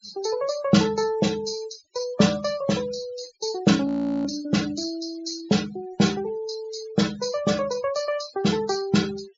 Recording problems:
treble cut off; nothing above 8 kHz
noise reduction artefacts; signal-to-artefact ratio 17 dB
frozen audio; at 4 s

